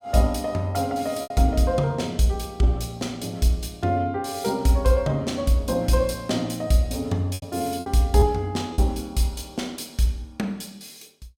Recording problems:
lost packets; 3% of the sound replaced, filled with repeated pitch periods

